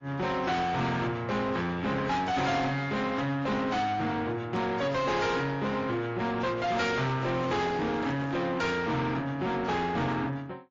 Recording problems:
codec artefacts; MP3, then AAC, log-spectral distance 3 dB
distortion; soft clipping, signal-to-distortion ratio 8 dB
handling noise; from 7 to 8.5 s; peak -4 dB vs average level

